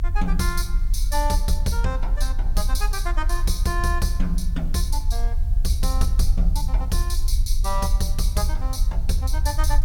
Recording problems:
electrical hum; 60 Hz, harmonics up to 540 Hz, SNR 20 dB
hiss; slope 0 dB per octave, SNR 29 dB
low-frequency rumble; below 48 Hz, strongest tone 24 Hz, SNR -3 dB

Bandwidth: 17.5 kHz